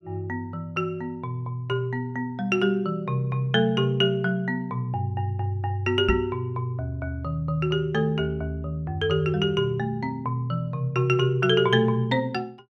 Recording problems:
knock on the microphone; at 6 s; peak +3 dB vs average level

